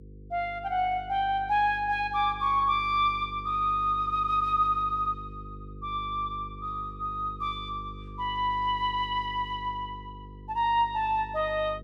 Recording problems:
hum; 50 Hz, harmonics up to 500 Hz, SNR 17 dB

